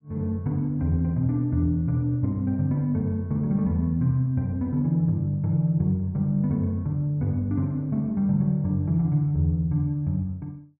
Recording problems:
low-pass filter; nothing above 3.1 kHz

